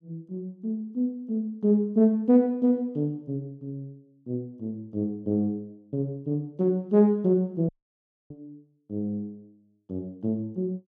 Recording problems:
dropout; at 7.5 s for 0.5 s

